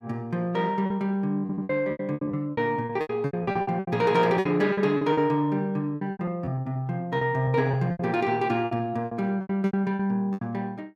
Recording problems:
lost packets; 17% of the sound replaced, filled with repeated pitch periods
stutter; at 1.5 s

